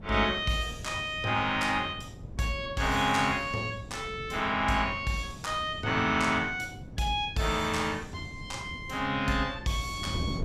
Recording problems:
wind on the microphone; below 230 Hz, SNR 14 dB

